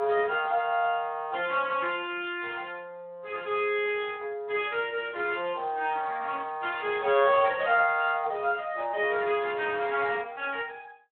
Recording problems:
telephone audio; 320 Hz to 3.5 kHz, Speex

